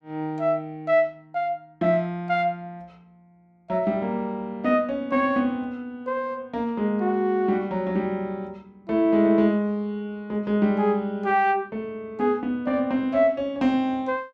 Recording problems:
none

